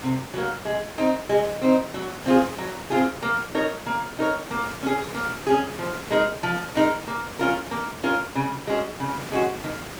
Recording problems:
background hiss; slope -4 dB per octave, SNR 11 dB

